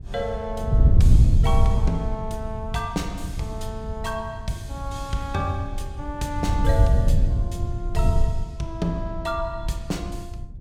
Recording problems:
wind on the microphone; below 98 Hz, SNR -6 dB

